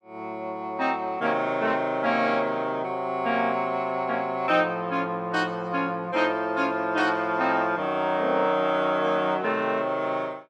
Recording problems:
none

